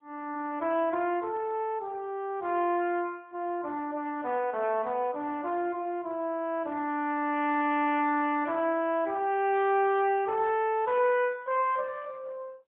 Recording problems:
phone line; 240 Hz to 3.5 kHz, AMR-NB

